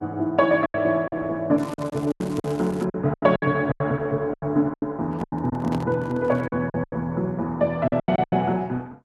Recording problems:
lossy codec; Opus, log-spectral distance 2 dB
lost packets; 13% of the sound replaced, filled with silence
crackling; from 1.5 to 3 s; loose cable, SNR 22 dB
microphone handling noise; from 5 to 6.5 s; peak -3 dB vs average level

